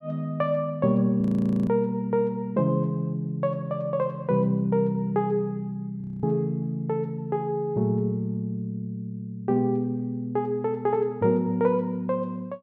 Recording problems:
audio freezing; at 1 s and at 6 s

